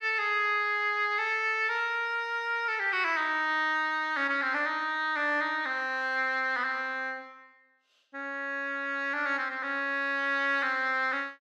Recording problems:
none

